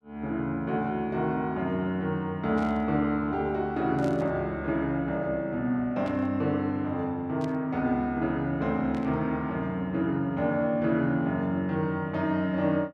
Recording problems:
burst of static; 5 times, first at 2.5 s; peak -14 dB vs average level

